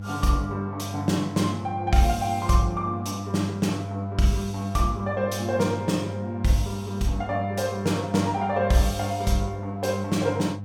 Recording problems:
hum; 50 Hz, harmonics up to 500 Hz, SNR 8 dB

